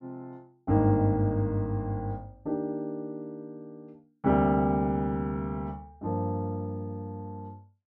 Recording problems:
none

